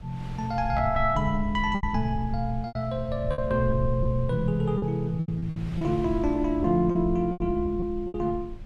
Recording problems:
rumble; below 88 Hz, SNR 10 dB
wind on the microphone; below 1.8 kHz, SNR 24 dB
packet loss; 9% of the sound replaced, filled with repeated pitch periods

